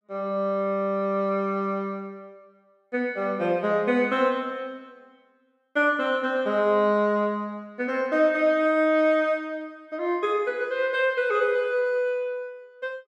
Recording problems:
none

